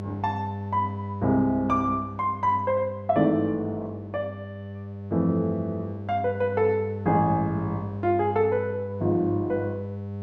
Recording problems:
hum; 50 Hz, harmonics up to 700 Hz, SNR 9 dB

